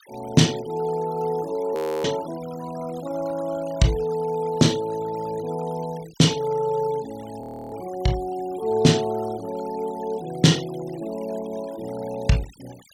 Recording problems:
noise reduction artefacts; signal-to-artefact ratio 20 dB
frozen audio; at 2 s and at 7.5 s

